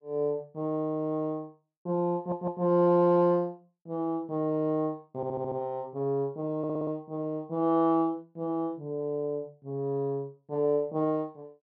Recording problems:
audio stuttering; at 2 s, at 5 s and at 6.5 s

